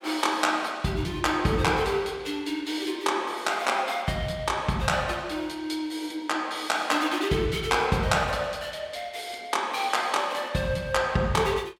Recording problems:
none

